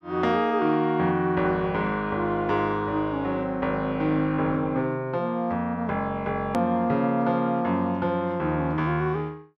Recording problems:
click at an edit; at 6.5 s

